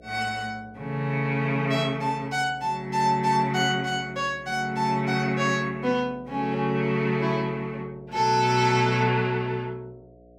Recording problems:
hum; 60 Hz, harmonics up to 720 Hz, SNR 26 dB

